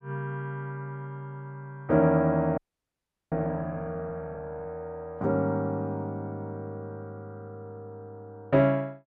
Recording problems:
audio freezing; at 2.5 s for 0.5 s

